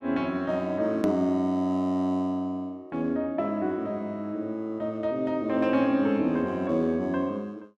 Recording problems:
click at an edit; at 1 s

